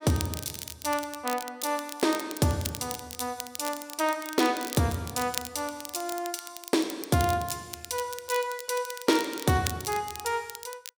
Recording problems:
crackle; vinyl, SNR 9 dB

